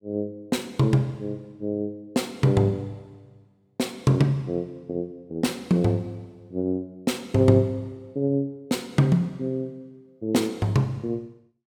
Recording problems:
none

